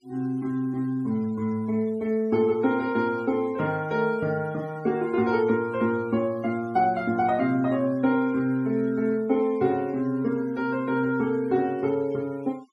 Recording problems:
denoising artefacts; signal-to-artefact ratio 26 dB

